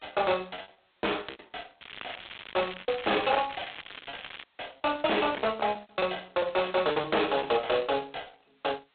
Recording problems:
phone line; 340 Hz to 3.7 kHz, G.726
distortion; hard clipping, signal-to-distortion ratio 9 dB
packet loss; 12% of the sound replaced, filled with repeated pitch periods
crackle; from 2 to 4.5 s; loose cable, SNR 13 dB

